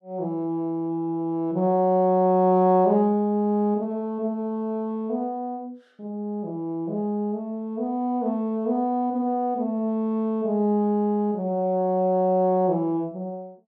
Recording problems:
none

